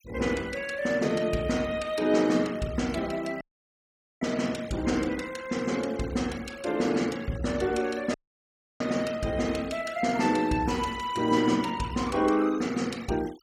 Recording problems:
noise reduction artefacts; signal-to-artefact ratio 19 dB
audio cutting out; at 3.5 s for 1 s and at 8 s for 0.5 s

